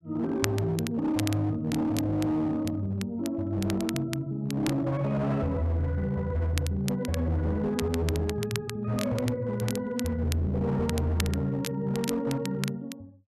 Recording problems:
distortion; hard clipping, signal-to-distortion ratio 12 dB
crackle; vinyl, SNR 12 dB

